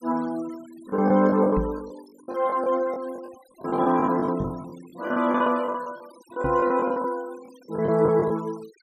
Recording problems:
noise reduction artefacts; signal-to-artefact ratio 25 dB
packet loss; 13% of the sound replaced, filled with the last packet
knock on the microphone; at 1.5 s, at 4.5 s and at 6.5 s; peak 0 dB vs average level

